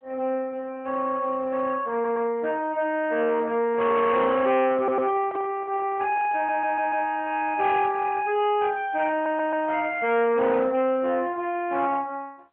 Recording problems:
phone line; 280 Hz to 3.5 kHz, AMR-NB
distortion; soft clipping, signal-to-distortion ratio 11 dB
stutter; 4 times, first at 2 s
microphone handling noise; from 3.5 to 7 s; peak -7 dB vs average level

